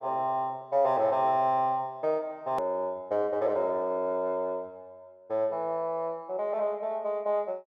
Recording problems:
hard cut with a click; at 2.5 s

